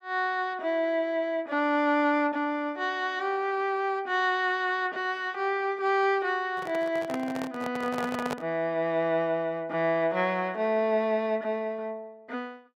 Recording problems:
handling noise; from 6.5 to 8.5 s; peak -2 dB vs average level

